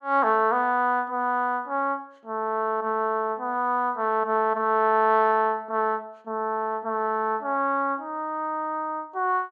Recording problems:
none

